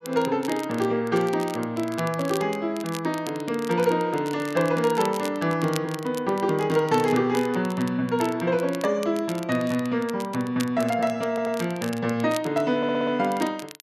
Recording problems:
crackling; vinyl, SNR 17 dB
audio stuttering; at 11 s and at 13 s

